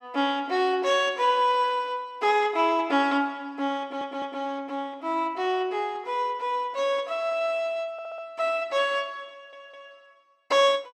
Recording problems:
audio stuttering; at 4 s, at 8 s and at 9.5 s

